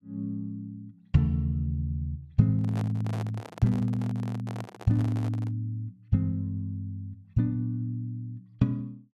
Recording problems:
microphone handling noise; from 2.5 to 5.5 s; peak -7 dB vs average level

